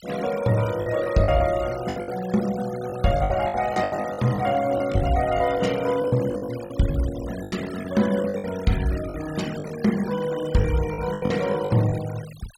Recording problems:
denoising artefacts; signal-to-artefact ratio 16 dB
packet loss; 12% of the sound replaced, filled with the last packet

